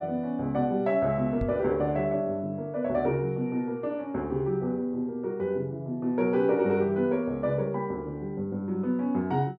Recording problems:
microphone thump; at 1.5 s; peak -1 dB vs average level

